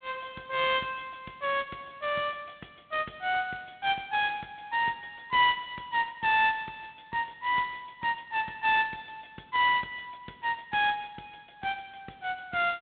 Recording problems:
phone line; 220 Hz to 3.6 kHz, G.726

